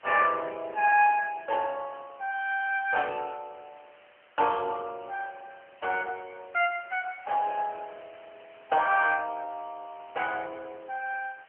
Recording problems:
phone line; 300 Hz to 3.1 kHz, AMR-NB
background hiss; SNR 27 dB

